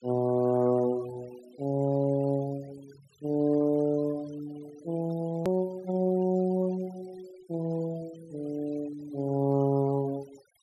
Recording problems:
noise reduction artefacts; signal-to-artefact ratio 24 dB
edit click; at 5.5 s

